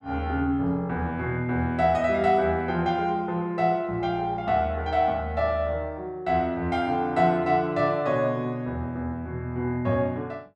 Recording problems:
none

